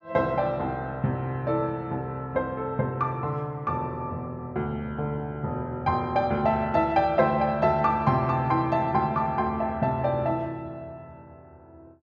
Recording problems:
none

